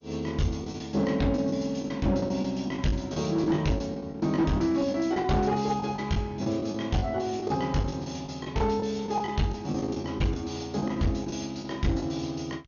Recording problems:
lossy compression; MP2, log-spectral distance 4 dB, nothing above 6.7 kHz
distortion; hard clipping, signal-to-distortion ratio 12 dB
lost packets; 10% of the sound replaced, filled with the last packet

